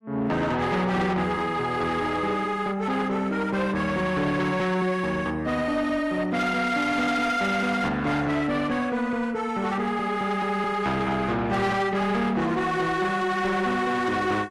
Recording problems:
lossy codec; AAC, log-spectral distance 2 dB
distorted audio; soft clipping, signal-to-distortion ratio 11 dB

